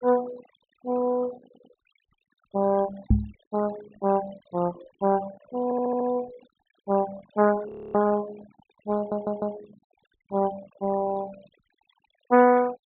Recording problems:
treble missing; nothing above 4 kHz
denoising artefacts; signal-to-artefact ratio 18 dB
audio stuttering; at 1.5 s, at 5.5 s and at 9 s
knock on the microphone; at 3 s; peak +9 dB vs average level
audio freezing; at 7.5 s

